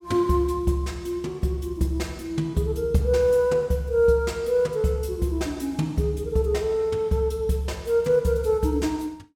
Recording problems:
none

